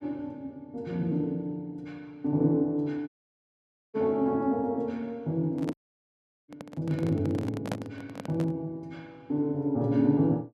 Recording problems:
audio cutting out; at 3 s for 1 s and at 5.5 s for 0.5 s
handling noise; from 5.5 to 8.5 s; peak 0 dB vs average level

